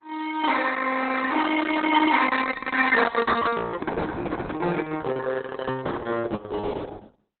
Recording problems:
lossy codec; Opus, log-spectral distance 5 dB, nothing above 4 kHz

